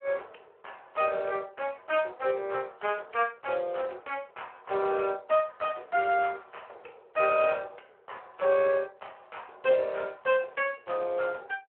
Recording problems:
phone line; 340 Hz to 3.1 kHz, Speex

